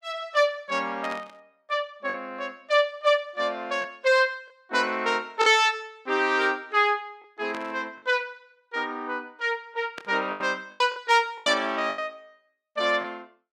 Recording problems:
packet loss; 4% of the sound replaced, filled with the last packet
static burst; at 1 s, at 7.5 s and at 10 s; peak -8 dB vs average level

